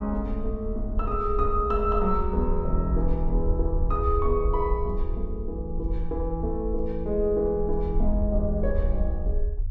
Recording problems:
low-frequency rumble; below 58 Hz, SNR 2 dB

